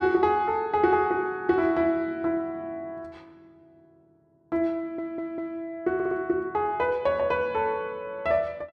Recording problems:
audio stuttering; at 5 s and at 6 s

